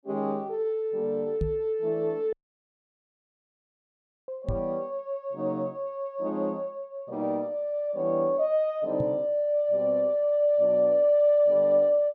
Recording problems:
knock on the microphone; at 1.5 s, at 4.5 s and at 9 s; peak -1 dB vs average level
audio cutting out; at 2.5 s for 2 s

